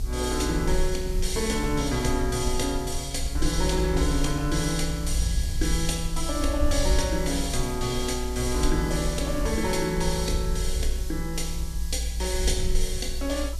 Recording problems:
background hiss; SNR 15 dB
rumble; below 58 Hz, strongest tone 20 Hz, SNR 3 dB

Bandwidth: 14 kHz